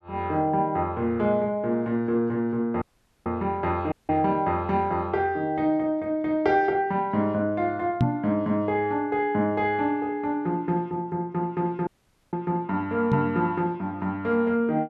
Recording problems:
audio cutting out; at 3 s, at 4 s and at 12 s
knock on the microphone; at 8 s and at 13 s; peak +7 dB vs average level

